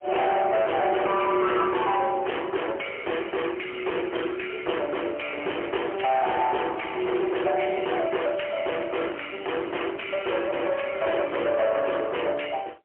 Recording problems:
telephone audio; 300 Hz to 3.1 kHz, AMR-NB, then MP3
distorted audio; hard clipping, uneven, signal-to-distortion ratio 7 dB

